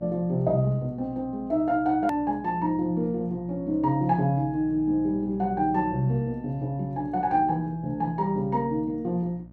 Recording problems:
electrical hum; 60 Hz, harmonics up to 900 Hz, SNR 20 dB
edit click; at 2 s

